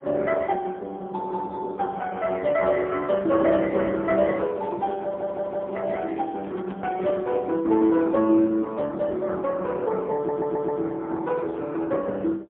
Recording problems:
telephone audio; 190 Hz to 3.6 kHz, AMR-NB, then MP3
handling noise; from 4 to 7.5 s; peak -11 dB vs average level
audio stuttering; at 5 s and at 10 s

